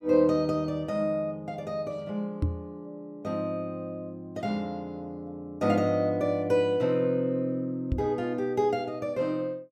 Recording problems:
microphone thump; at 2.5 s and at 8 s; peak +5 dB vs average level

